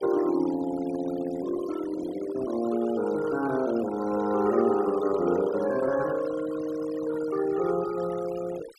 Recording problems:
noise reduction artefacts; signal-to-artefact ratio 15 dB

